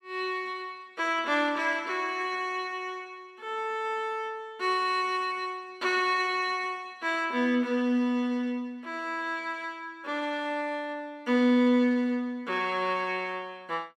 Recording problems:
none

